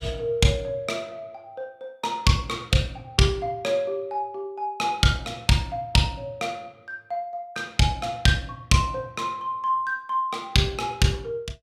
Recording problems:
none

